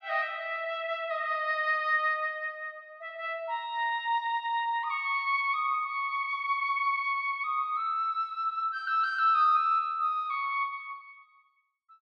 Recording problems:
none

